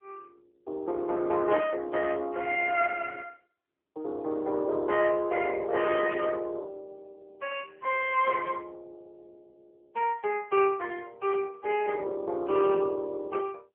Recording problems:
telephone audio; 280 Hz to 3.4 kHz, AMR-NB

